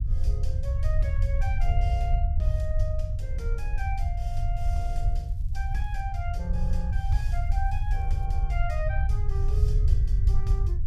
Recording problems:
low-frequency rumble; below 74 Hz, SNR -10 dB
crackle; from 5 to 6 s and from 7 to 8.5 s; loose cable, SNR 28 dB

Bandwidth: 15 kHz